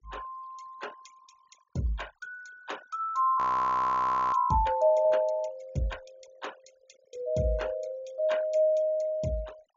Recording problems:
low-pass filter; nothing above 7.1 kHz
denoising artefacts; signal-to-artefact ratio 26 dB
frozen audio; at 3.5 s for 1 s

